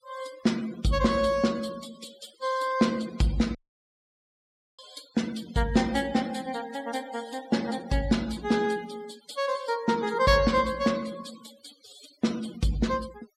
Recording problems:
denoising artefacts; signal-to-artefact ratio 18 dB
dropout; at 3.5 s for 1 s

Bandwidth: 16 kHz